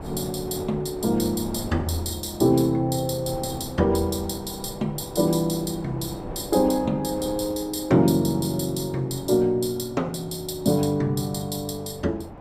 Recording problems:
wind noise; below 680 Hz, SNR 15 dB

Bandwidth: 15.5 kHz